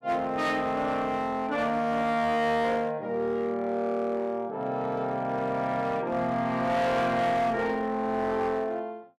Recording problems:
distorted audio; hard clipping, uneven, signal-to-distortion ratio 11 dB

